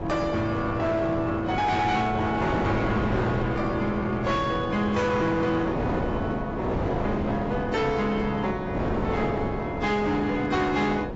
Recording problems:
codec artefacts; AAC, log-spectral distance 2 dB, nothing above 7.6 kHz
distortion; hard clipping, signal-to-distortion ratio 11 dB
wind noise; below 650 Hz, SNR 4 dB

